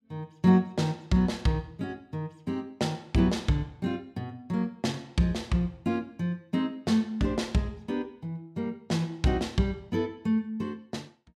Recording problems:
none

